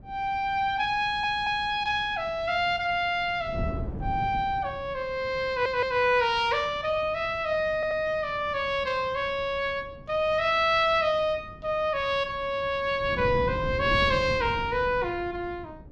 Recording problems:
wind noise; below 220 Hz, SNR 14 dB
stutter; at 1 s, at 5.5 s and at 8 s

